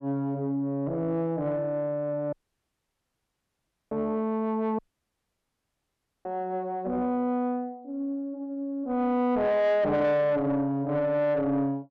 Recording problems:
distorted audio; soft clipping, signal-to-distortion ratio 9 dB
dropout; at 2.5 s for 1.5 s and at 5 s for 1.5 s

